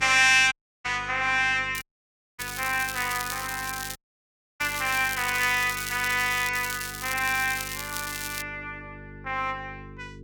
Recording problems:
electrical hum; 50 Hz, harmonics up to 450 Hz, SNR 20 dB
dropout; at 0.5 s, at 2 s for 0.5 s and at 4 s for 0.5 s
crackle; from 2 to 4 s, from 4.5 to 6.5 s and from 6.5 to 8.5 s; loose cable, SNR 9 dB

